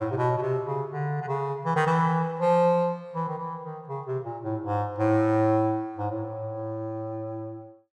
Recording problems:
none

